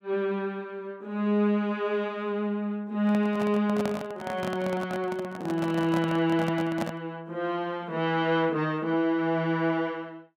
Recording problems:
microphone handling noise; from 3 to 7 s; peak 0 dB vs average level

